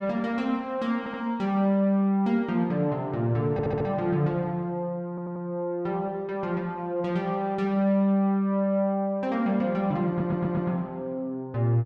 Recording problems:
audio stuttering; 4 times, first at 1 s

